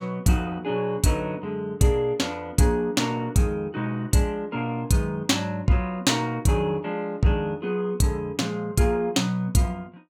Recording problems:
none

